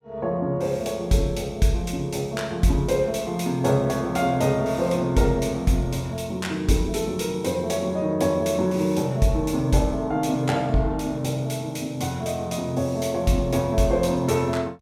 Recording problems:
none

